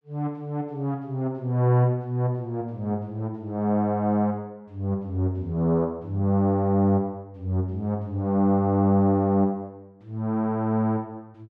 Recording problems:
none

